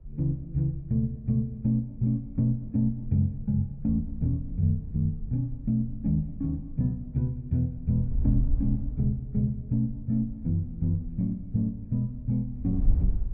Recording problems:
wind noise; below 68 Hz, SNR 9 dB

